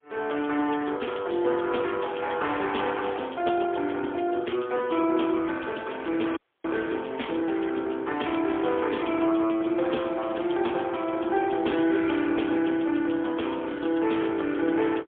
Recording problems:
phone line; 260 Hz to 3.4 kHz, AMR-NB, then MP3
audio cutting out; at 6.5 s

